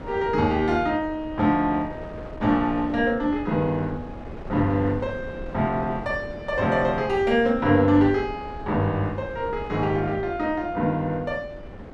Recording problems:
wind on the microphone; below 510 Hz, SNR 14 dB

